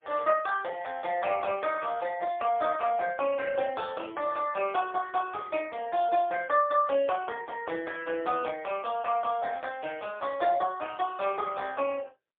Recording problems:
telephone audio; 340 Hz to 3.3 kHz, AMR-NB, then MP3

